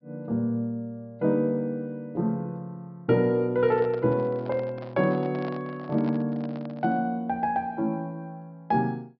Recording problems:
treble cut off; nothing above 5.5 kHz
handling noise; from 3.5 to 7 s; peak -9 dB vs average level

